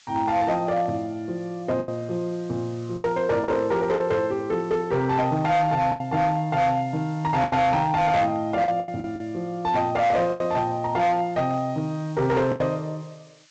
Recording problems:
low-pass filter; nothing above 8 kHz
distortion; hard clipping, signal-to-distortion ratio 12 dB
background hiss; SNR 29 dB
lost packets; 6% of the sound replaced, filled with the last packet

